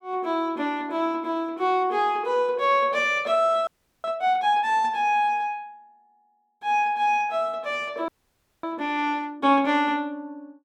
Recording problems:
audio freezing; at 3.5 s and at 8 s for 0.5 s

